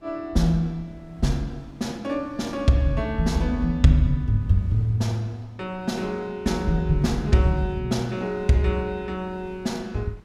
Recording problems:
wind on the microphone; below 280 Hz, SNR 24 dB

